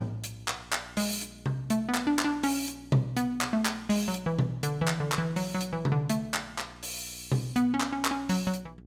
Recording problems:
hum; 60 Hz, harmonics up to 480 Hz, SNR 23 dB

